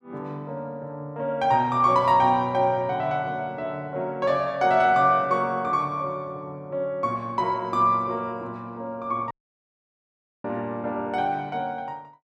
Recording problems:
audio cutting out; at 9.5 s for 1 s

